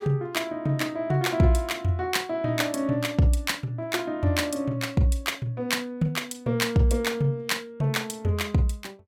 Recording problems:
none

